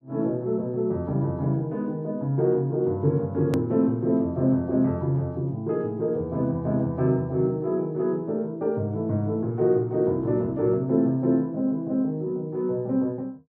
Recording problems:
hard cut with a click; at 3.5 s

